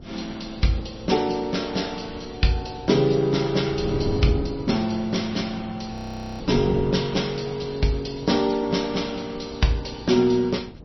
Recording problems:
lossy codec; MP3, log-spectral distance 6 dB, nothing above 5.8 kHz
wind noise; below 290 Hz, SNR 13 dB
frozen audio; at 6 s

